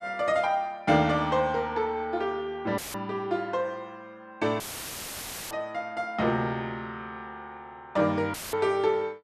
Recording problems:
dropout; at 3 s, at 4.5 s for 1 s and at 8.5 s; filled with static

